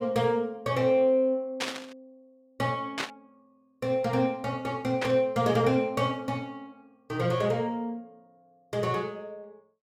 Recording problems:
static burst; at 1.5 s, at 3 s and at 5 s; peak +1 dB vs average level

